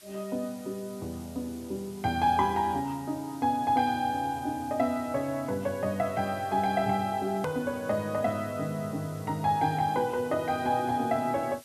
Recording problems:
background hiss; slope +2 dB per octave, SNR 22 dB
hard cut with a click; at 7.5 s

